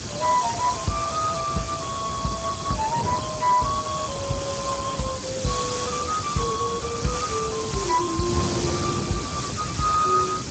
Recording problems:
codec artefacts; Speex, log-spectral distance 15 dB, nothing above 7.8 kHz
background hiss; slope +1 dB per octave, SNR 6 dB
wind noise; below 450 Hz, SNR 6 dB

